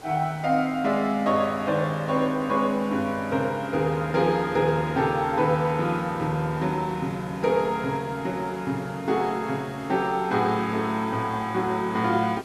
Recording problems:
hiss; slope -5 dB per octave, SNR 20 dB

